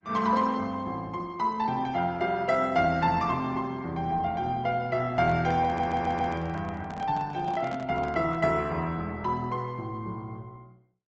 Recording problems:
treble missing; nothing above 7.6 kHz
lossy codec; Opus, log-spectral distance 2 dB
microphone handling noise; from 5 to 8.5 s; peak -7 dB vs average level
audio stuttering; at 5.5 s

